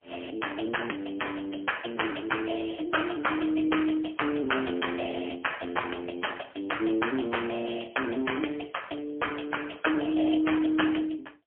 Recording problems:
phone line; 240 Hz to 3.3 kHz, AMR-NB, then MP3

